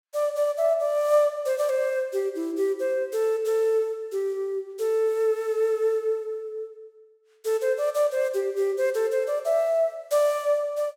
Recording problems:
none

